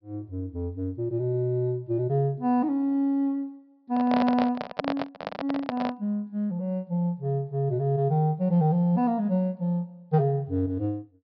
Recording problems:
treble missing; nothing above 5.5 kHz
microphone handling noise; from 4 to 6 s; peak +2 dB vs average level

